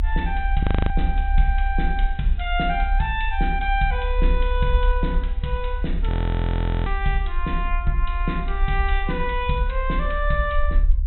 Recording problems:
treble missing; nothing above 4 kHz
low-frequency rumble; below 64 Hz, strongest tone 34 Hz, SNR -1 dB
audio freezing; at 0.5 s and at 6 s for 1 s

